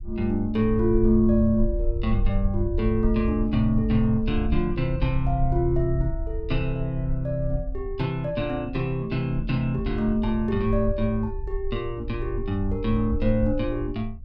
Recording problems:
low-frequency rumble; below 60 Hz, SNR 7 dB

